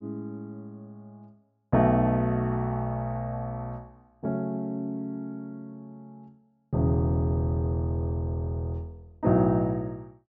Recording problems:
treble missing; nothing above 7.2 kHz

